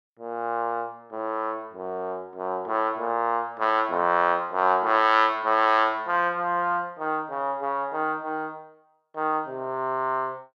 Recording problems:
none

